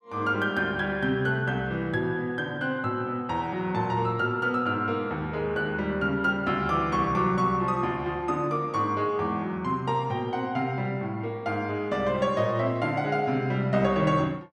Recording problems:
none

